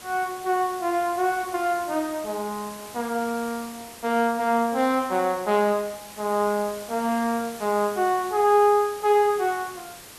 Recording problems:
hiss; slope -2 dB per octave, SNR 16 dB

